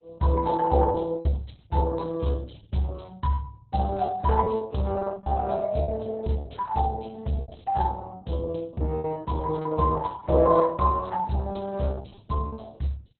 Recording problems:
lossy compression; AAC, then Opus, log-spectral distance 4 dB, nothing above 4.1 kHz
lost packets; 10% of the sound replaced, filled with repeated pitch periods

